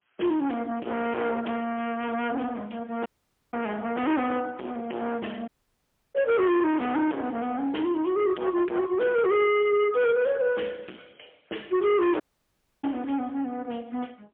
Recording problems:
telephone audio; 260 Hz to 3.3 kHz, AMR-NB, then MP3
distorted audio; hard clipping, signal-to-distortion ratio 8 dB
dropout; at 3 s, at 5.5 s for 0.5 s and at 12 s for 0.5 s

